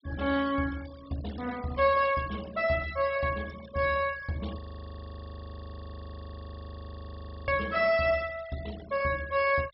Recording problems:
treble missing; nothing above 5.4 kHz
noise reduction artefacts; signal-to-artefact ratio 20 dB
audio freezing; at 4.5 s for 3 s

